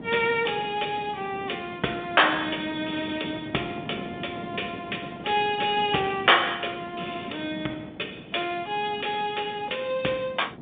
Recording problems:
phone line; 190 Hz to 3.7 kHz, G.711
wind noise; below 440 Hz, SNR 14 dB

